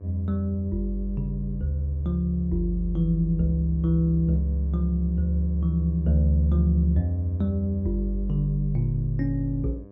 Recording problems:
mains hum; 50 Hz, harmonics up to 1.2 kHz, SNR 21 dB

